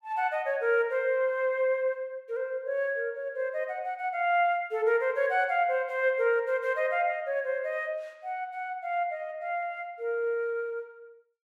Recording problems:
none

